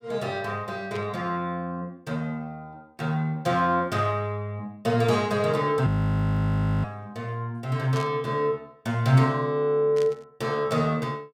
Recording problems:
static burst; at 1 s, at 8 s and at 10 s; peak -9 dB vs average level
frozen audio; at 6 s for 1 s

